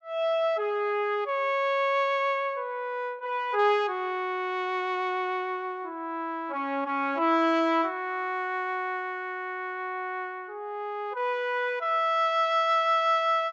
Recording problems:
treble missing; nothing above 7.7 kHz

